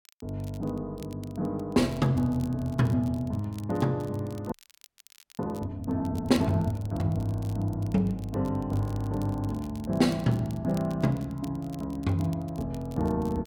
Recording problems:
crackle; vinyl, SNR 25 dB
audio freezing; at 4.5 s for 1 s

